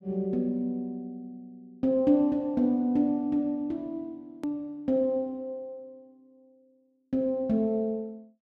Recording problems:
edit click; at 4.5 s

